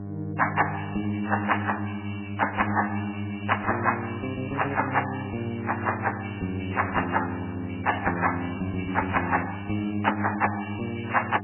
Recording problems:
lossy compression; MP3, log-spectral distance 9 dB, nothing above 2.9 kHz
electrical hum; 50 Hz, harmonics up to 1.1 kHz, SNR 9 dB

